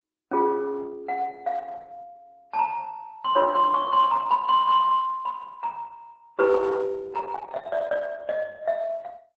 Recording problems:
codec artefacts; MP3, then Opus, log-spectral distance 2 dB

